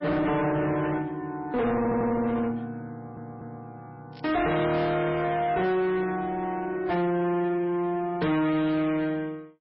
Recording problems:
lossy compression; MP3, log-spectral distance 2 dB, nothing above 5.3 kHz
distortion; soft clipping, signal-to-distortion ratio 7 dB
audio stuttering; at 2 s and at 3 s
crackling; at 4 s; loose cable, SNR 24 dB

